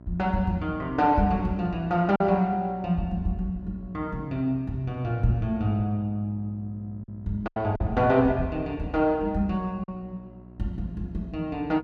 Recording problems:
hum; 60 Hz, harmonics up to 1 kHz, SNR 21 dB
lost packets; 2% of the sound replaced, filled with silence

